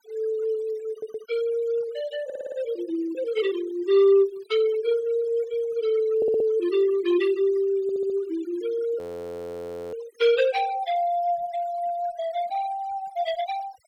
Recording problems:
noise reduction artefacts; signal-to-artefact ratio 18 dB
audio stuttering; 4 times, first at 1 s
audio freezing; at 9 s for 1 s

